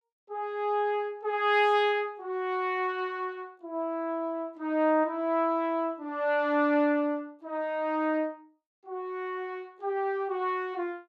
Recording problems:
none

